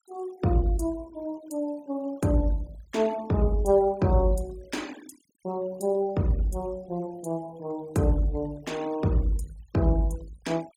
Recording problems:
denoising artefacts; signal-to-artefact ratio 24 dB

